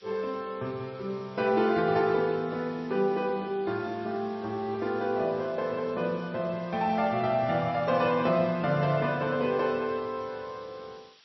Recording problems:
codec artefacts; MP3, log-spectral distance 5 dB, nothing above 5.5 kHz
hiss; SNR 27 dB

